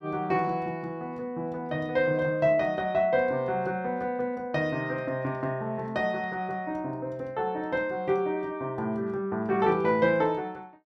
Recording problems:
none

